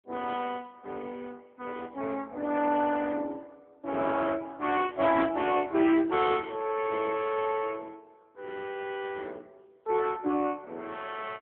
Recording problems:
telephone audio; 240 Hz to 3.3 kHz, AMR-NB

